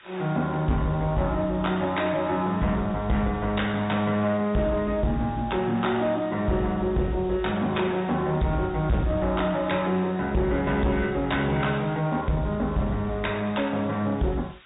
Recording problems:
treble cut off; nothing above 3.8 kHz
lossy codec; MP3, log-spectral distance 7 dB
distorted audio; soft clipping, signal-to-distortion ratio 10 dB
hiss; SNR 25 dB

